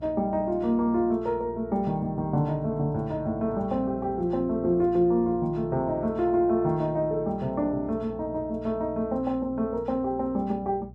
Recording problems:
electrical hum; 60 Hz, harmonics up to 480 Hz, SNR 18 dB

